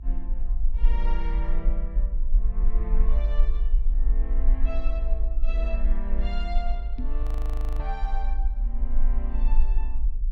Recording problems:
rumble; below 42 Hz, strongest tone 20 Hz, SNR -12 dB
microphone bump; at 7 s; peak +7 dB vs average level
frozen audio; at 7 s for 0.5 s

